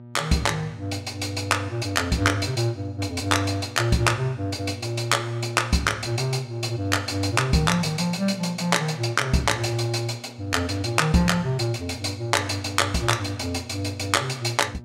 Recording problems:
hum; 60 Hz, harmonics up to 960 Hz, SNR 18 dB

